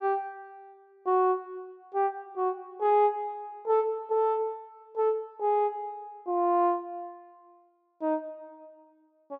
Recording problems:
none

